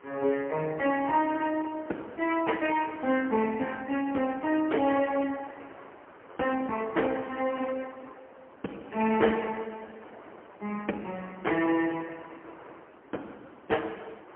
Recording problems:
phone line; 240 Hz to 3.1 kHz, AMR-NB, then MP3
wind on the microphone; below 1.3 kHz, SNR 20 dB

